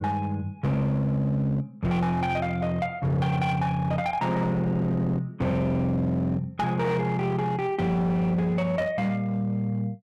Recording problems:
distortion; hard clipping, uneven, signal-to-distortion ratio 10 dB

